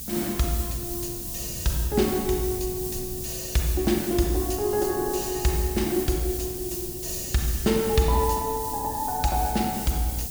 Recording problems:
electrical hum; 60 Hz, harmonics up to 720 Hz, SNR 20 dB
hiss; SNR 6 dB
wind on the microphone; below 190 Hz, SNR 16 dB

